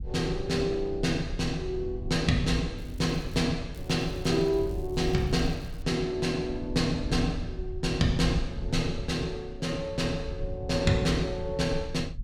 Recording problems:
rumble; below 92 Hz, SNR 9 dB
crackling; at 3 s and from 4 to 6 s; loose cable, SNR 27 dB

